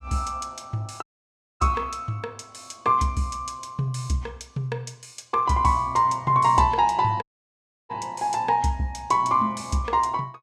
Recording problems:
audio cutting out; at 1 s for 0.5 s and at 7 s for 0.5 s

